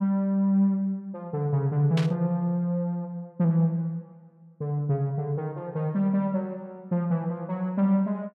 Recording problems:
burst of static; at 2 s; peak -4 dB vs average level

